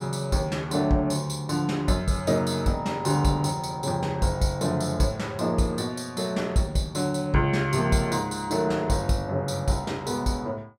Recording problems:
none

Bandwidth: 17 kHz